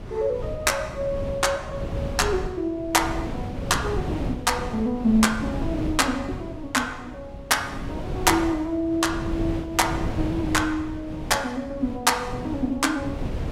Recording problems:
wind on the microphone; below 280 Hz, SNR 8 dB

